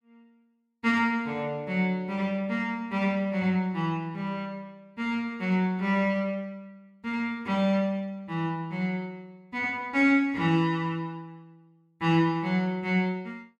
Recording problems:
none

